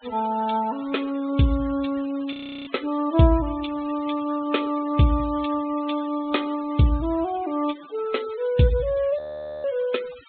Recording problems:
low-pass filter; nothing above 4 kHz
noise reduction artefacts; signal-to-artefact ratio 20 dB
audio freezing; at 2.5 s and at 9 s

